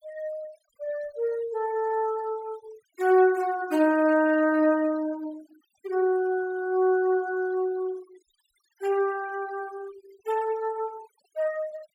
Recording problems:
noise reduction artefacts; signal-to-artefact ratio 22 dB

